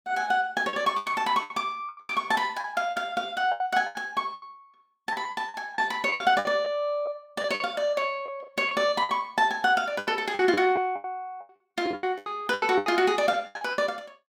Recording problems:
lost packets; 15% of the sound replaced, filled with the last packet

